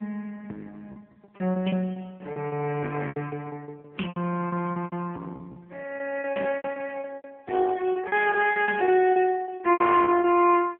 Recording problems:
telephone audio; 240 Hz to 3.2 kHz, AMR-NB
distorted audio; soft clipping, signal-to-distortion ratio 13 dB
lost packets; 17% of the sound replaced, filled with repeated pitch periods

